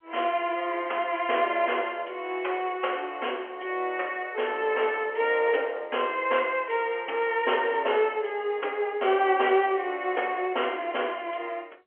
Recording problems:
phone line; 340 Hz to 3.2 kHz, G.711

